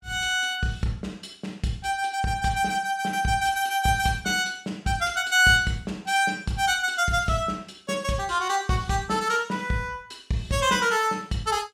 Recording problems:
none

